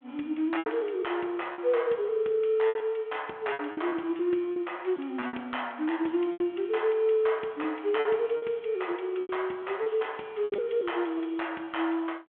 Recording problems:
phone line; 260 Hz to 3.4 kHz, G.726
packet loss; 8% of the sound replaced, filled with repeated pitch periods

